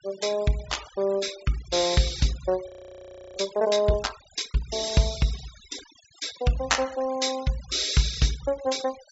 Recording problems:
low-pass filter; nothing above 8 kHz
noise reduction artefacts; signal-to-artefact ratio 17 dB
frozen audio; at 2.5 s for 0.5 s

